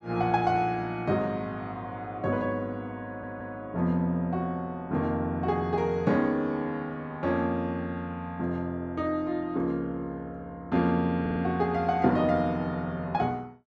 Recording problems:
audio stuttering; at 3 s and at 11 s

